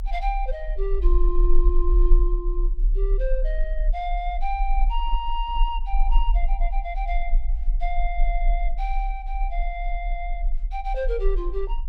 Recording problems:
low-frequency rumble; below 38 Hz, SNR -4 dB

